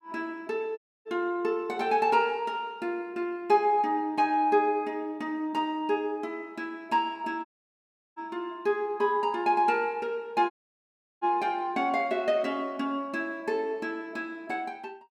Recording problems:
dropout; at 1 s, at 7.5 s for 0.5 s and at 11 s for 0.5 s

